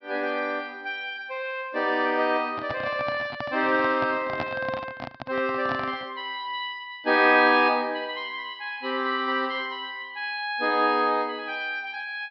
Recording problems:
treble missing; nothing above 5.5 kHz
microphone handling noise; from 2.5 to 6 s; peak -1 dB vs average level

